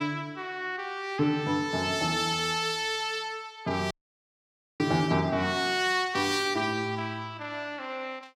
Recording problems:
dropout; at 4 s for 1 s

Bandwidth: 16.5 kHz